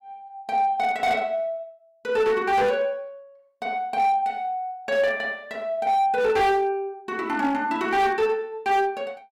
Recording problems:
distorted audio; hard clipping, signal-to-distortion ratio 11 dB

